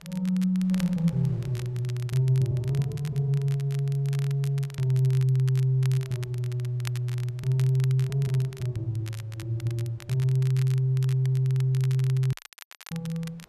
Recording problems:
wind noise; below 680 Hz, SNR 32 dB
crackling; vinyl, SNR 20 dB
audio cutting out; at 12 s for 0.5 s

